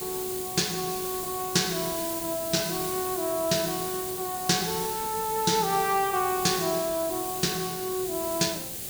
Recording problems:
hiss; SNR 5 dB

